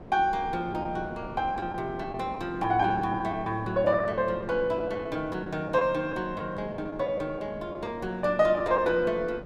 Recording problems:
wind on the microphone; below 520 Hz, SNR 15 dB
packet loss; 6% of the sound replaced, filled with the last packet

